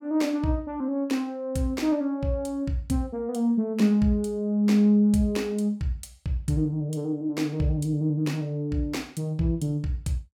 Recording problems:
none

